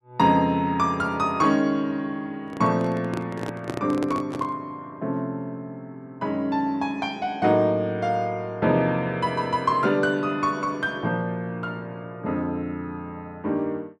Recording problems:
microphone handling noise; from 2.5 to 4.5 s; peak -1 dB vs average level

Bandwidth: 12 kHz